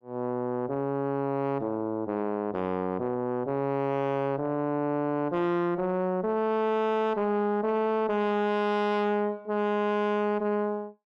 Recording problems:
distorted audio; soft clipping, signal-to-distortion ratio 10 dB

